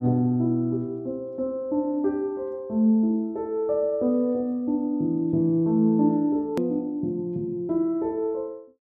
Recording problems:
edit click; at 6.5 s

